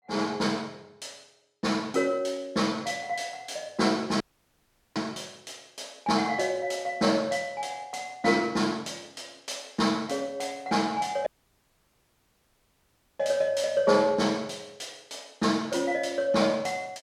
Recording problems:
audio cutting out; at 4 s for 1 s and at 11 s for 2 s

